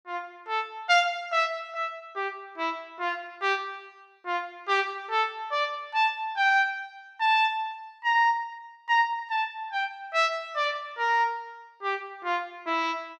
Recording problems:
none

